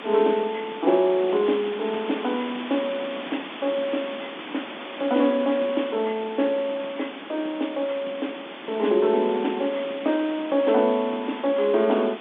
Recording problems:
telephone audio; 240 Hz to 3.6 kHz, G.711
background hiss; SNR 12 dB

